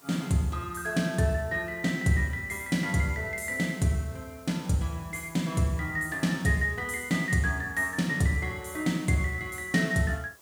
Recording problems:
hiss; SNR 25 dB

